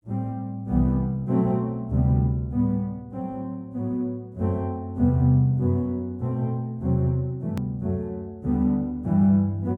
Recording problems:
edit click; at 7.5 s

